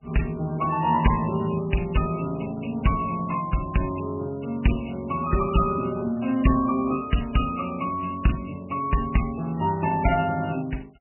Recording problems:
lossy compression; MP3, log-spectral distance 8 dB, nothing above 2.9 kHz

